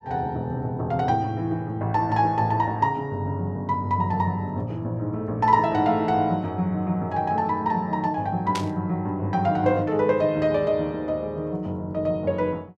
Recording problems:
burst of static; at 8.5 s; peak -3 dB vs average level

